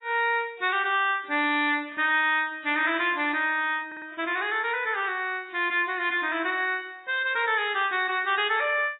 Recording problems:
codec artefacts; AAC, log-spectral distance 3 dB, nothing above 3.7 kHz
stutter; at 4 s

